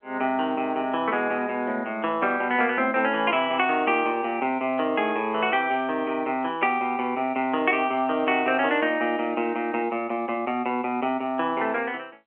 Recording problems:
telephone audio; 170 Hz to 3.3 kHz, G.711

